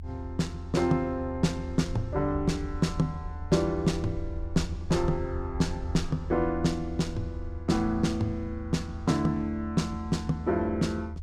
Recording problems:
low-frequency rumble; below 80 Hz, SNR 9 dB

